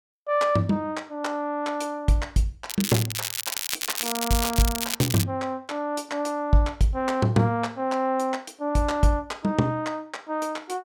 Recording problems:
crackling; from 2.5 to 5 s; loose cable, SNR 2 dB

